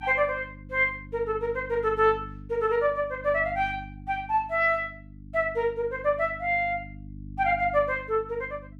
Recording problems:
electrical hum; 50 Hz, harmonics up to 300 Hz, SNR 17 dB

